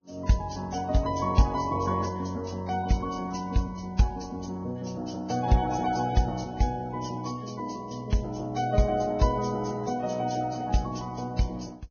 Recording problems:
lossy codec; Vorbis, log-spectral distance 5 dB, nothing above 6.5 kHz

